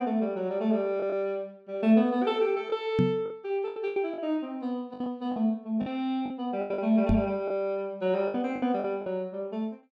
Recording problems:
lost packets; 9% of the sound replaced, filled with the last packet
microphone thump; at 3 s and at 7 s; peak +7 dB vs average level

